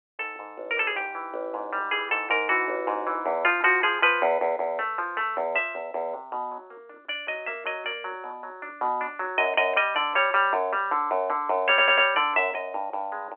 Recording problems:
telephone audio; 260 Hz to 3.1 kHz, G.711
audio stuttering; at 12 s

